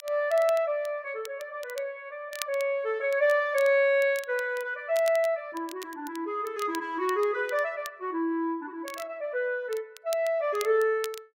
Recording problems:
crackling; vinyl, SNR 18 dB

